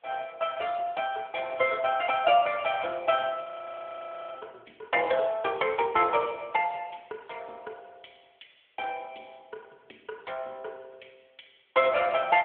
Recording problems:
phone line; 340 Hz to 3.3 kHz, AMR-NB
hiss; SNR 42 dB
audio freezing; at 3.5 s for 1 s

